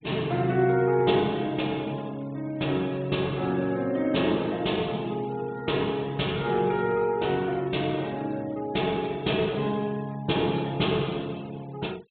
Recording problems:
treble missing; nothing above 4 kHz
noise reduction artefacts; signal-to-artefact ratio 24 dB

